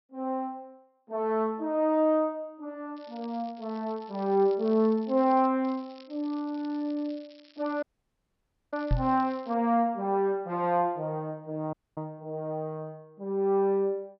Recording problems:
low-pass filter; nothing above 5.6 kHz
crackling; from 3 to 5.5 s and from 5.5 to 9.5 s; loose cable, SNR 27 dB
dropout; at 8 s for 1 s and at 12 s
microphone bump; at 9 s; peak +5 dB vs average level

